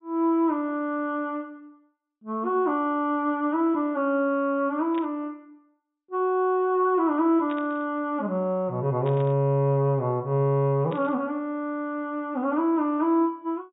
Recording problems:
treble cut off; nothing above 4 kHz
burst of static; 4 times, first at 5 s; peak -13 dB vs average level

